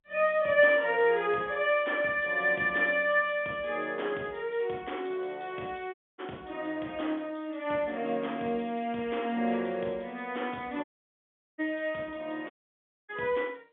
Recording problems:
phone line; 280 Hz to 3.5 kHz, G.711
dropout; at 6 s, at 11 s for 0.5 s and at 13 s for 0.5 s

